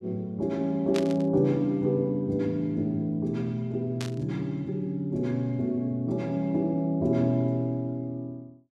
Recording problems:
static burst; at 1 s and at 4 s; peak -4 dB vs average level

